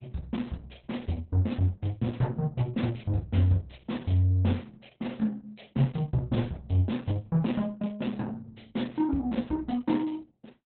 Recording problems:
codec artefacts; Opus, log-spectral distance 3 dB, nothing above 4 kHz

